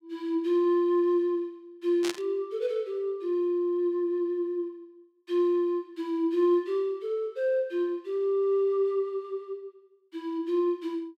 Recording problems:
burst of static; at 2 s; peak -2 dB vs average level

